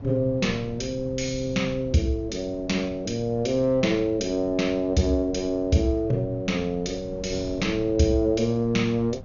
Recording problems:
treble missing; nothing above 6.9 kHz
wind noise; below 190 Hz, SNR 17 dB

